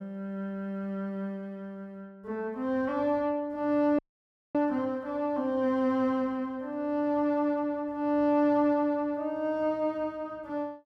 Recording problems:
audio cutting out; at 4 s for 0.5 s

